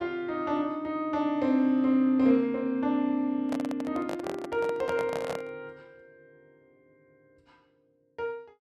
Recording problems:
handling noise; from 3.5 to 5.5 s; peak -3 dB vs average level

